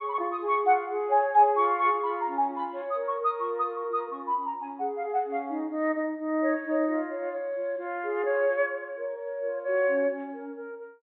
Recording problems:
treble missing; nothing above 4 kHz

